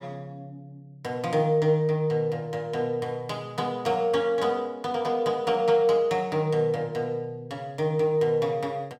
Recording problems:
none

